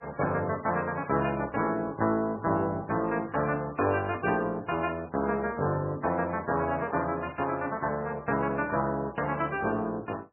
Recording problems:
codec artefacts; MP3, log-spectral distance 3 dB, nothing above 2.4 kHz

